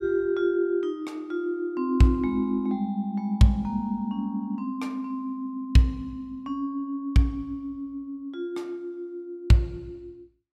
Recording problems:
none

